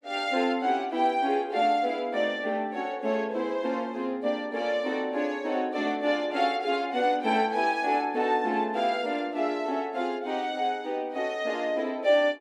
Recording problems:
none

